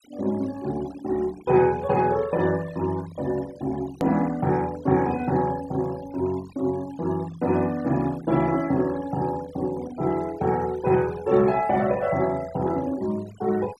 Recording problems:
denoising artefacts; signal-to-artefact ratio 20 dB
edit click; at 4 s

